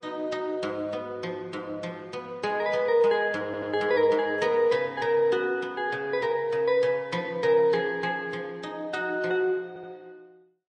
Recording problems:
codec artefacts; MP3, then Vorbis, log-spectral distance 2 dB, nothing above 8.5 kHz
audio stuttering; at 3.5 s and at 9.5 s

